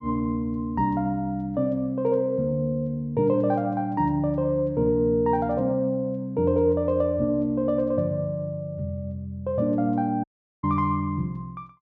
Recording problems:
dropout; at 10 s

